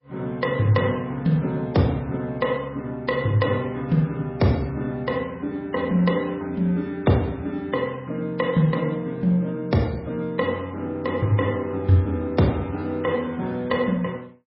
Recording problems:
lossy codec; MP3, log-spectral distance 2 dB, nothing above 5.3 kHz

